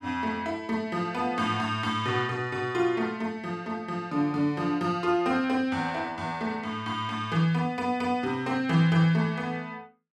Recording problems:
none

